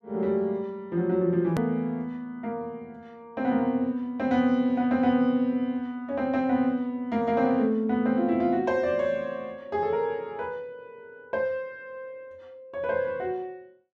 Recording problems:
click at an edit; at 1.5 s

